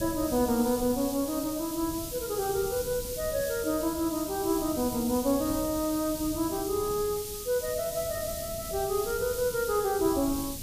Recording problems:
background hiss; slope +8 dB per octave, SNR 8 dB
wind on the microphone; below 210 Hz, SNR 15 dB

